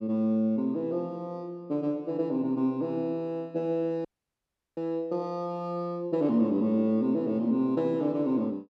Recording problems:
frozen audio; at 4 s for 0.5 s

